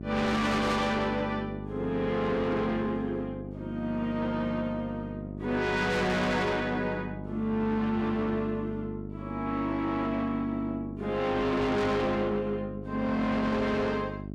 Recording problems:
distorted audio; soft clipping, signal-to-distortion ratio 7 dB
electrical hum; 50 Hz, harmonics up to 700 Hz, SNR 10 dB

